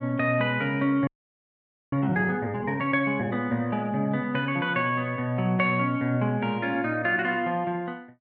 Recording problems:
audio freezing; at 1 s for 1 s

